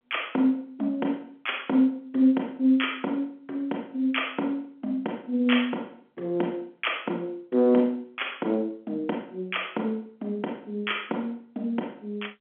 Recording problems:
phone line; 220 Hz to 3.4 kHz, G.711

